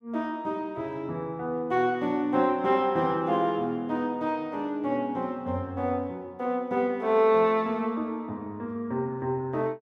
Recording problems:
none

